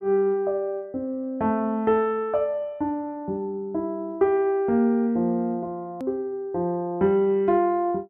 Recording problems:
edit click; at 6 s

